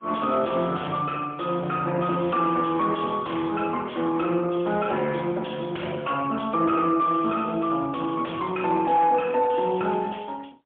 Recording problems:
telephone audio; 220 Hz to 3.3 kHz, AMR-NB, then MP3
distortion; soft clipping, signal-to-distortion ratio 12 dB

